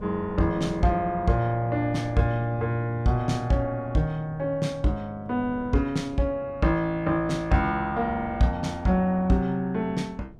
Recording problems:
wind on the microphone; below 280 Hz, SNR 19 dB

